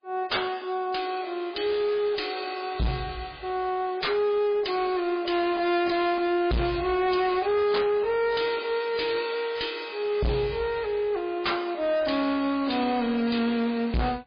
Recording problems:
lossy codec; MP3, log-spectral distance 5 dB, nothing above 4.5 kHz
distortion; hard clipping, uneven, signal-to-distortion ratio 5 dB

